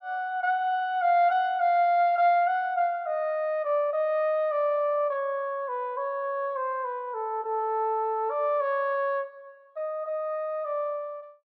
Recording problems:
none

